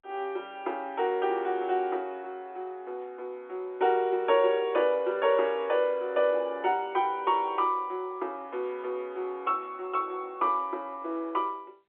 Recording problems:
phone line; 280 Hz to 3.5 kHz, G.711

